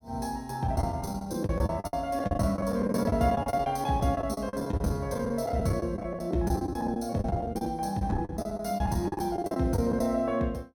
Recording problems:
packet loss; 17% of the sound replaced, filled with the last packet

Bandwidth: 17.5 kHz